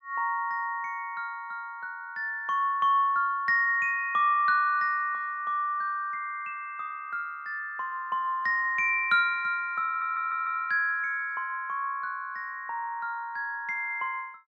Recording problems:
audio stuttering; at 10 s

